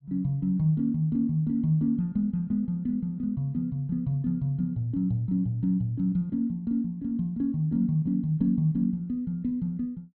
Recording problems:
treble cut off; nothing above 4.4 kHz

